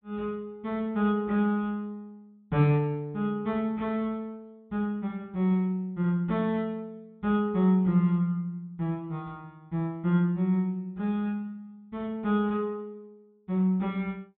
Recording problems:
low-pass filter; nothing above 4 kHz

